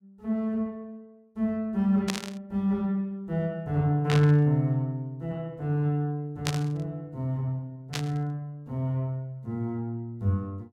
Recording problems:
burst of static; 4 times, first at 2 s; peak +2 dB vs average level

